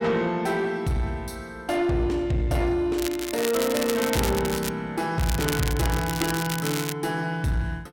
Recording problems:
distorted audio; soft clipping, signal-to-distortion ratio 11 dB
crackling; from 3 to 4.5 s and from 5 to 7 s; loose cable, SNR 6 dB

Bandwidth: 16.5 kHz